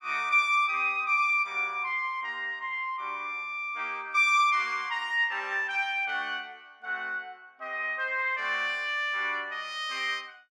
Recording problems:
none

